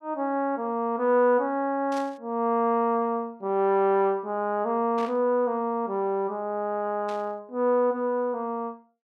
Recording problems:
static burst; at 2 s, at 5 s and at 7 s; peak -12 dB vs average level

